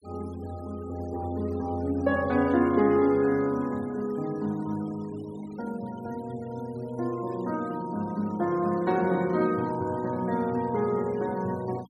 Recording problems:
denoising artefacts; signal-to-artefact ratio 24 dB

